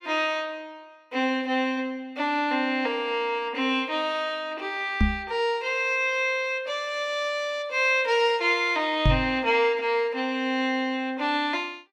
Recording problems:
microphone bump; at 5 s and at 9 s; peak +6 dB vs average level

